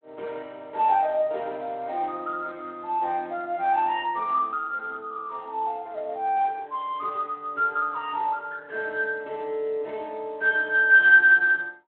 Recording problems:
telephone audio; 300 Hz to 3.7 kHz, Speex

